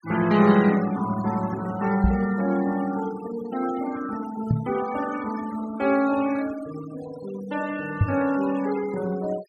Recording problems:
denoising artefacts; signal-to-artefact ratio 16 dB
knock on the microphone; at 2 s, at 4.5 s and at 8 s; peak +7 dB vs average level

